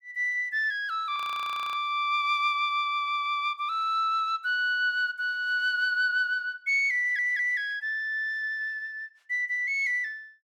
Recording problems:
audio freezing; at 1 s for 0.5 s
stutter; at 3 s and at 7 s

